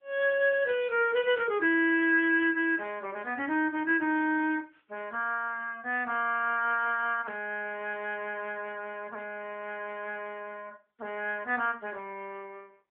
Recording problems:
phone line; 260 Hz to 3.3 kHz, AMR-NB

